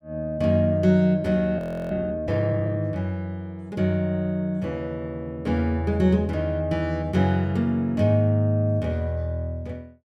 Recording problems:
audio freezing; at 1.5 s

